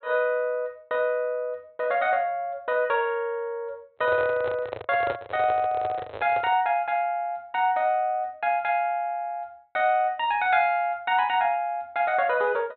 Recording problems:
low-pass filter; nothing above 4.1 kHz
handling noise; from 4 to 6.5 s; peak -3 dB vs average level

